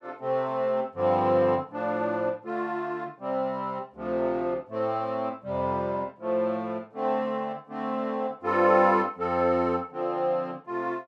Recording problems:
none

